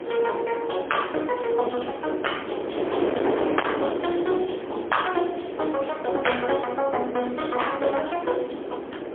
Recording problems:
telephone audio; 280 Hz to 3.3 kHz, AMR-NB, then MP3
distorted audio; hard clipping, uneven, signal-to-distortion ratio 14 dB
wind on the microphone; below 650 Hz, SNR 4 dB

